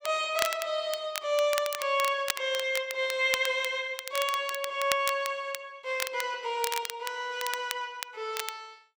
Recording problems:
crackling; vinyl, SNR 7 dB

